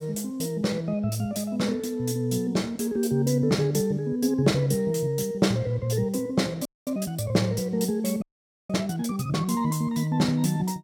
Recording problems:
audio freezing; at 6.5 s and at 8 s

